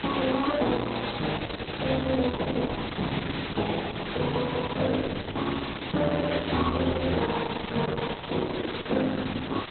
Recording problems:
lossy compression; Opus, log-spectral distance 20 dB, nothing above 4 kHz
hiss; SNR 7 dB

